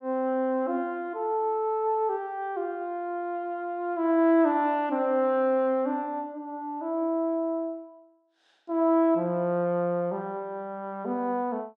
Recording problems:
none

